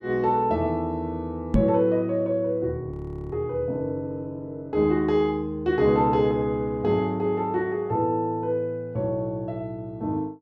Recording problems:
microphone bump; at 1.5 s; peak +7 dB vs average level
audio freezing; at 3 s

